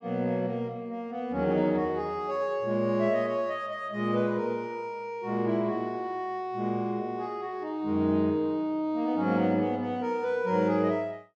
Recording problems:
none

